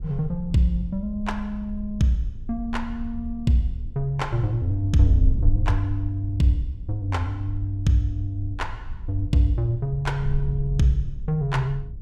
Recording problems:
wind on the microphone; below 62 Hz, SNR 8 dB

